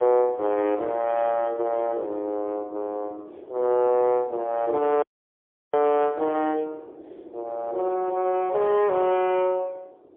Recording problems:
telephone audio; 300 Hz to 3.2 kHz, AMR-NB, then MP3
wind noise; below 520 Hz, SNR 20 dB
dropout; at 5 s for 0.5 s

